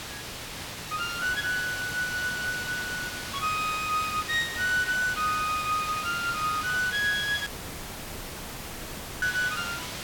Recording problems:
hiss; slope -1 dB per octave, SNR 7 dB
dropout; at 7.5 s for 2 s

